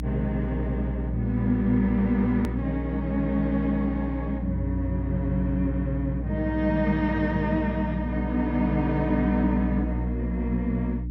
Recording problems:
electrical hum; 60 Hz, harmonics up to 300 Hz, SNR 5 dB
edit click; at 2.5 s

